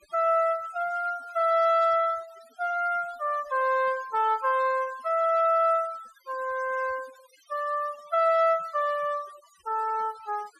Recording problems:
noise reduction artefacts; signal-to-artefact ratio 24 dB

